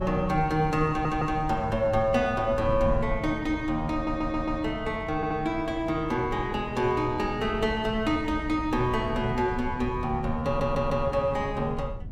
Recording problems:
wind on the microphone; below 120 Hz, SNR 11 dB
stutter; 4 times, first at 1 s

